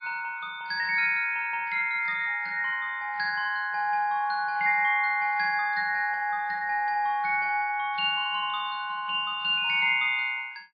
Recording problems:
codec artefacts; MP3, log-spectral distance 2 dB, nothing above 4.2 kHz

